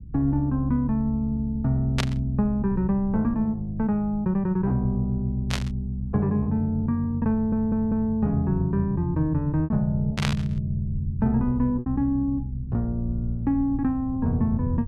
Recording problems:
low-frequency rumble; below 100 Hz, SNR 15 dB
packet loss; 2% of the sound replaced, filled with repeated pitch periods
static burst; at 2 s, at 5.5 s and at 10 s; peak +2 dB vs average level
audio stuttering; at 7.5 s

